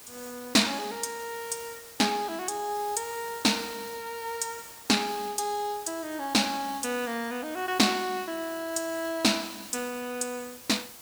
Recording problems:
background hiss; slope -1 dB per octave, SNR 15 dB

